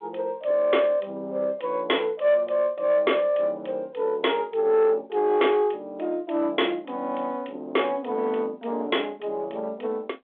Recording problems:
phone line; 220 Hz to 3.5 kHz, G.726
distorted audio; soft clipping, signal-to-distortion ratio 11 dB

